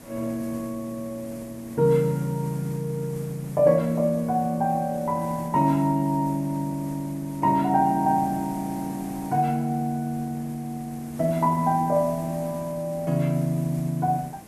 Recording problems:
background hiss; SNR 18 dB

